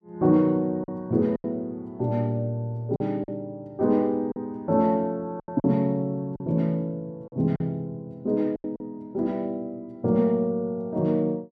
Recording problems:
lost packets; 5% of the sound replaced, filled with silence

